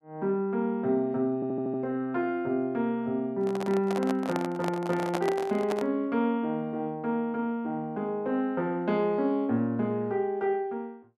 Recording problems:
audio stuttering; at 1.5 s
handling noise; from 3.5 to 6 s; peak +1 dB vs average level

